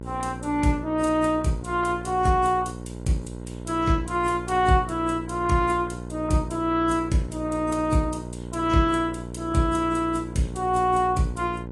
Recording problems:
lossy compression; AAC, log-spectral distance 3 dB, nothing above 10.4 kHz
hum; 60 Hz, harmonics up to 1.1 kHz, SNR 11 dB

